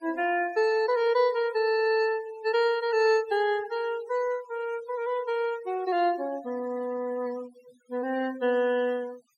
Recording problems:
noise reduction artefacts; signal-to-artefact ratio 21 dB

